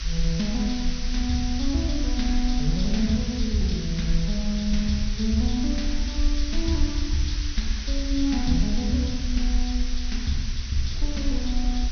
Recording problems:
low-pass filter; nothing above 6.2 kHz
hiss; SNR 8 dB
low-frequency rumble; below 50 Hz, SNR 3 dB
wind noise; below 310 Hz, SNR 22 dB

